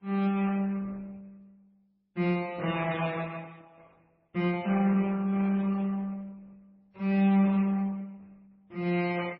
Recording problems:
codec artefacts; Opus, then MP3, log-spectral distance 3 dB, nothing above 17.1 kHz

